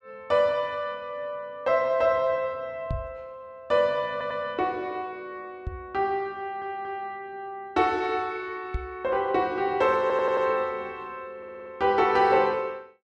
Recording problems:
knock on the microphone; at 3 s, at 5.5 s and at 8.5 s; peak -1 dB vs average level
audio stuttering; 4 times, first at 4 s

